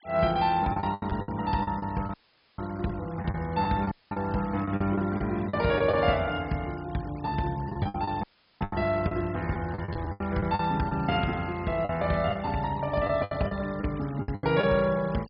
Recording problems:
low-pass filter; nothing above 5.5 kHz
denoising artefacts; signal-to-artefact ratio 21 dB
packet loss; 11% of the sound replaced, filled with the last packet
audio cutting out; at 2 s, at 4 s and at 8 s

